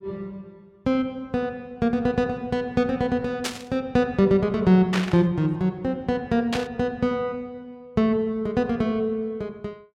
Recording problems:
static burst; at 3.5 s, at 5 s and at 6.5 s; peak +1 dB vs average level

